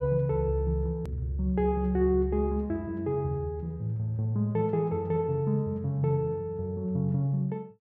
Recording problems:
click at an edit; at 1 s

